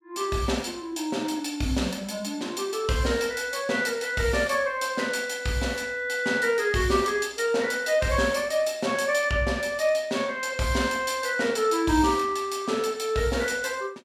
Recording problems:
none

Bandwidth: 16 kHz